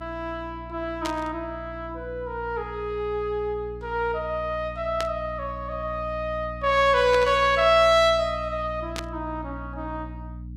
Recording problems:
hum; 60 Hz, harmonics up to 300 Hz, SNR 15 dB
burst of static; 4 times, first at 1 s; peak -3 dB vs average level

